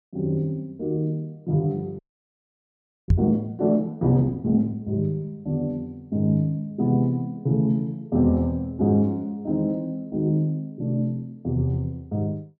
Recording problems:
frozen audio; at 2 s for 1 s
microphone thump; at 3 s; peak +9 dB vs average level

